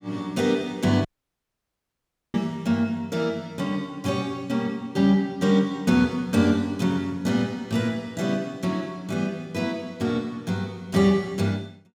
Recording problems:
dropout; at 1 s for 1.5 s

